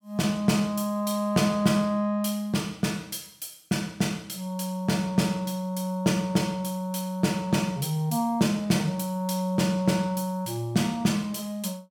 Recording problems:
none

